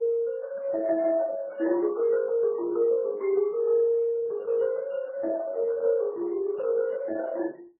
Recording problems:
lossy compression; Opus, then MP3, log-spectral distance 2 dB, nothing above 10.7 kHz

